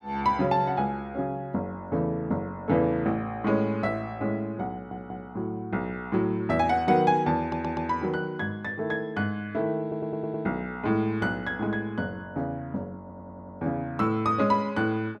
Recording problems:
stutter; 4 times, first at 4.5 s

